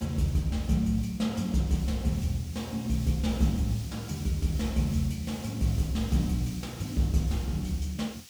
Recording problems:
background hiss; SNR 17 dB

